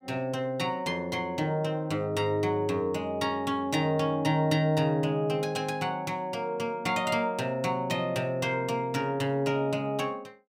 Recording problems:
none

